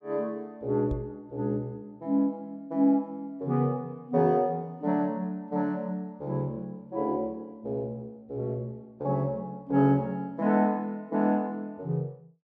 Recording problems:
microphone thump; at 1 s; peak -2 dB vs average level

